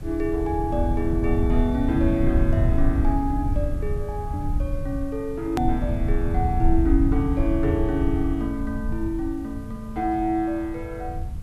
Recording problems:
hiss; slope -5 dB per octave, SNR 25 dB
low-frequency rumble; below 88 Hz, SNR 1 dB
hard cut with a click; at 5.5 s

